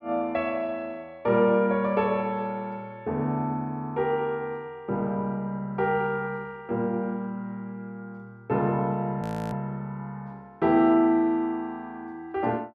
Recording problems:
frozen audio; at 9 s

